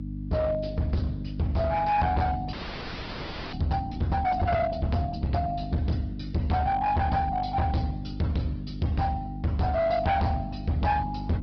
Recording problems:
low-pass filter; nothing above 5.2 kHz
lossy codec; Opus, log-spectral distance 3 dB
distorted audio; hard clipping, signal-to-distortion ratio 7 dB
hum; 50 Hz, harmonics up to 300 Hz, SNR 9 dB
frozen audio; at 2.5 s for 1 s

